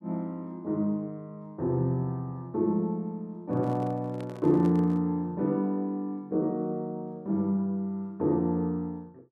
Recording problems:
handling noise; from 3.5 to 5 s; peak -8 dB vs average level

